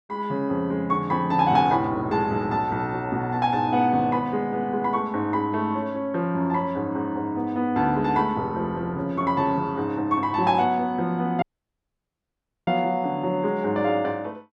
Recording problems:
audio cutting out; at 11 s for 1.5 s

